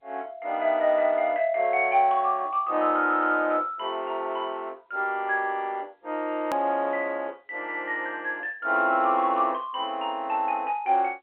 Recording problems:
phone line; 280 Hz to 3.2 kHz, G.711
edit click; at 6.5 s

